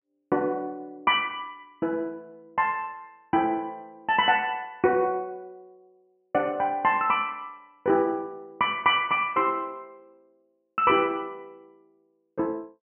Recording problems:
treble missing; nothing above 3.1 kHz

